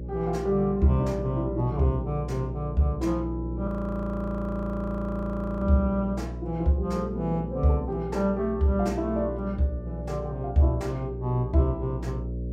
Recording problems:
hum; 60 Hz, harmonics up to 600 Hz, SNR 8 dB
frozen audio; at 3.5 s for 2 s

